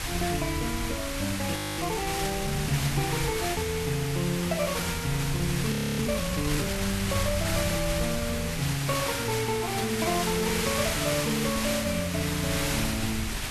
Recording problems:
hiss; slope 0 dB per octave, SNR 1 dB
wind on the microphone; below 100 Hz, SNR 10 dB
frozen audio; at 1.5 s and at 5.5 s

